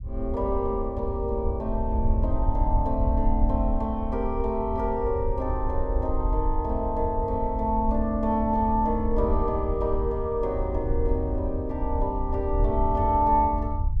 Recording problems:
low-frequency rumble; below 72 Hz, SNR 3 dB

